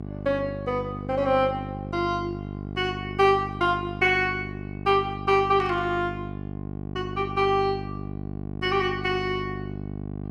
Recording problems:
electrical hum; 50 Hz, harmonics up to 1.1 kHz, SNR 9 dB
static burst; at 5.5 s; peak -13 dB vs average level

